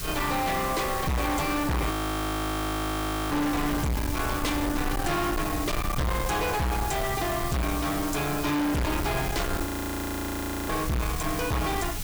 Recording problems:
distorted audio; hard clipping, signal-to-distortion ratio 6 dB
background hiss; slope +2 dB per octave, SNR 8 dB
low-frequency rumble; below 260 Hz, SNR 8 dB
audio freezing; at 2 s for 1.5 s and at 9.5 s for 1 s

